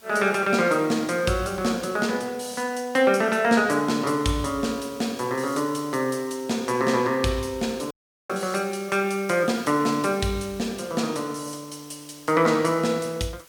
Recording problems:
hiss; slope -1 dB per octave, SNR 24 dB
dropout; at 8 s

